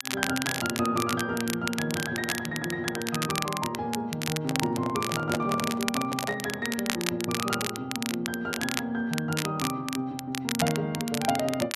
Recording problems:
crackle; vinyl, SNR 4 dB
handling noise; from 4.5 to 6.5 s; peak +3 dB vs average level

